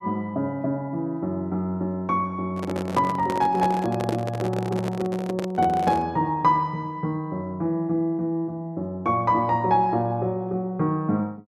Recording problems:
microphone handling noise; from 2.5 to 6 s; peak +1 dB vs average level

